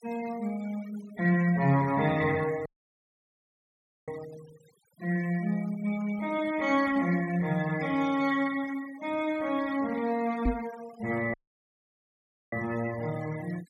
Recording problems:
denoising artefacts; signal-to-artefact ratio 19 dB
audio cutting out; at 2.5 s for 1.5 s and at 11 s for 1 s
knock on the microphone; at 10 s; peak +5 dB vs average level

